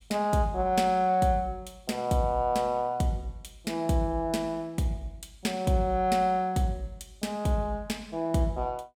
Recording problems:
none

